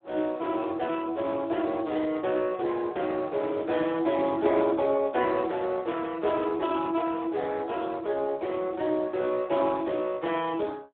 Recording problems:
phone line; 280 Hz to 2.6 kHz, Speex

